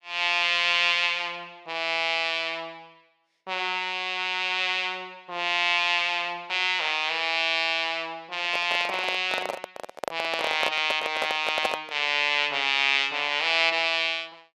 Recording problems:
handling noise; from 8.5 to 12 s; peak +1 dB vs average level

